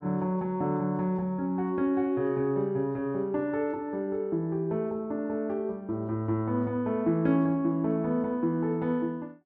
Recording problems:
none

